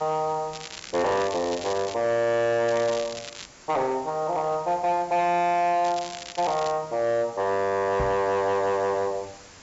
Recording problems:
low-pass filter; nothing above 8 kHz
distorted audio; hard clipping, signal-to-distortion ratio 11 dB
hiss; slope -2 dB per octave, SNR 22 dB
crackle; from 0.5 to 2 s, at 2.5 s and at 6 s; loose cable, SNR 14 dB
microphone bump; at 8 s; peak -2 dB vs average level

